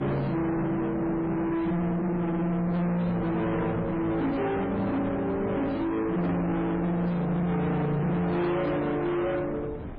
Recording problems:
codec artefacts; MP3, then MP3, log-spectral distance 2 dB, nothing above 10.7 kHz
distorted audio; soft clipping, signal-to-distortion ratio 7 dB
wind noise; below 610 Hz, SNR 16 dB

